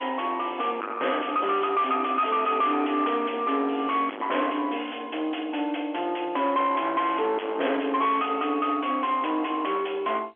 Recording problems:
telephone audio; 240 Hz to 3.4 kHz, G.711
distortion; soft clipping, signal-to-distortion ratio 7 dB

